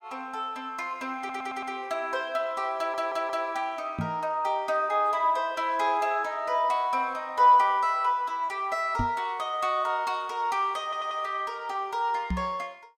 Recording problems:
stutter; at 1 s, at 3 s and at 11 s
microphone bump; at 4 s, at 9 s and at 12 s; peak +1 dB vs average level

